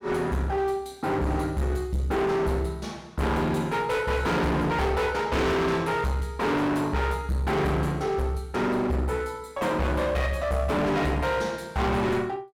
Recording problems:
distortion; hard clipping, uneven, signal-to-distortion ratio 5 dB

